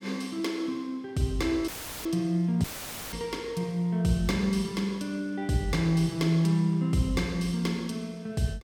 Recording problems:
dropout; at 1.5 s and at 2.5 s; filled with static

